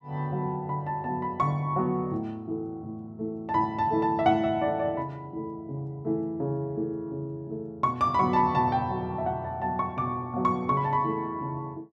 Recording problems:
none

